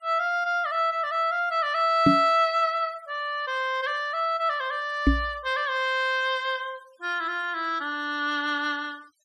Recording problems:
denoising artefacts; signal-to-artefact ratio 27 dB
knock on the microphone; at 2 s and at 5 s; peak +9 dB vs average level

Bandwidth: 12.5 kHz